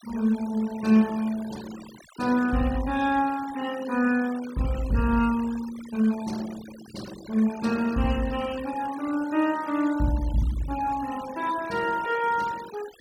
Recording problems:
noise reduction artefacts; signal-to-artefact ratio 18 dB

